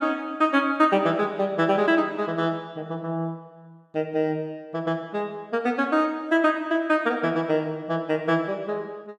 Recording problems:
none

